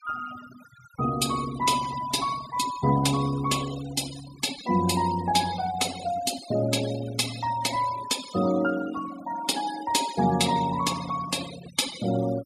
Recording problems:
noise reduction artefacts; signal-to-artefact ratio 14 dB

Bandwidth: 15 kHz